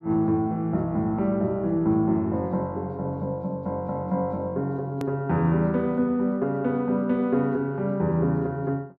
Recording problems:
hard cut with a click; at 5 s

